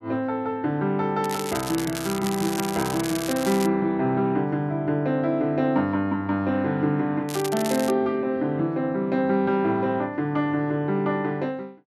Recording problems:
crackle; from 1 to 3.5 s and at 7.5 s; loose cable, SNR 10 dB

